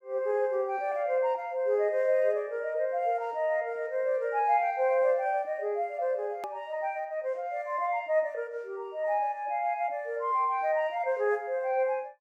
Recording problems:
click at an edit; at 6.5 s

